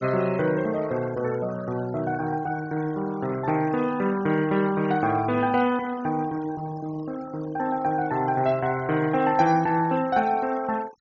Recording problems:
treble missing; nothing above 6.9 kHz
noise reduction artefacts; signal-to-artefact ratio 19 dB

